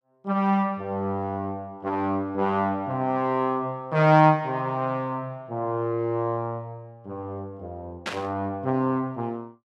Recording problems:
burst of static; at 8 s; peak -1 dB vs average level

